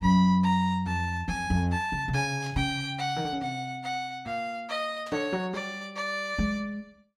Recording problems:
static burst; at 2.5 s and at 5 s; peak -14 dB vs average level

